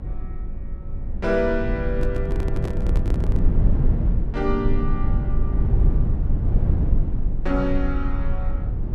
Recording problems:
low-frequency rumble; below 86 Hz, strongest tone 20 Hz, SNR -3 dB
microphone handling noise; from 2 to 3.5 s; peak -1 dB vs average level

